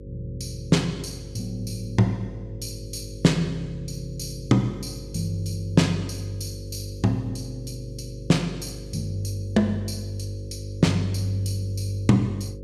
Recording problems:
hum; 50 Hz, harmonics up to 550 Hz, SNR 13 dB

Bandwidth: 14.5 kHz